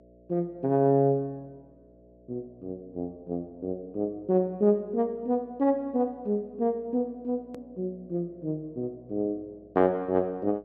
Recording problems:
treble missing; nothing above 8 kHz
hum; 60 Hz, harmonics up to 660 Hz, SNR 27 dB
hard cut with a click; at 7.5 s

